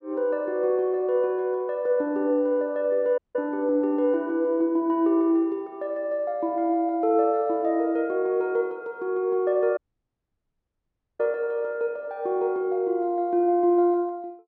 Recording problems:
dropout; at 3 s and at 10 s for 1.5 s

